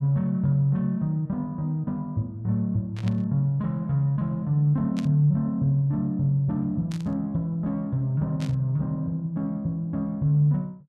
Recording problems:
burst of static; 4 times, first at 3 s; peak -11 dB vs average level

